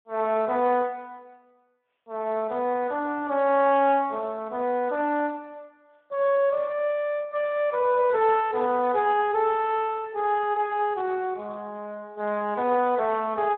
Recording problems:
telephone audio; 300 Hz to 4 kHz, Speex

